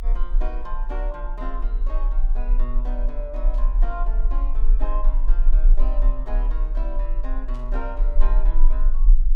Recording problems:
low-frequency rumble; below 36 Hz, strongest tone 22 Hz, SNR -12 dB
static burst; at 3.5 s and at 7.5 s; peak -12 dB vs average level

